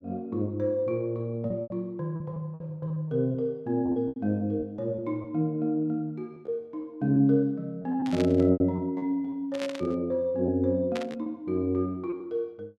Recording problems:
packet loss; 9% of the sound replaced, filled with repeated pitch periods
burst of static; at 8 s, at 9.5 s and at 11 s; peak -4 dB vs average level

